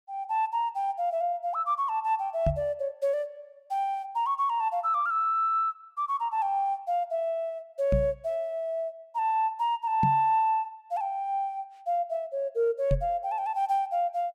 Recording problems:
microphone bump; 4 times, first at 2.5 s; peak +4 dB vs average level

